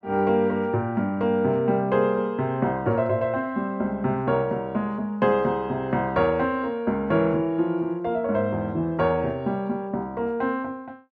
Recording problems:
none

